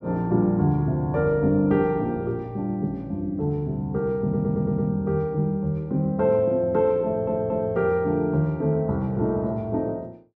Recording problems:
stutter; at 4 s and at 7 s

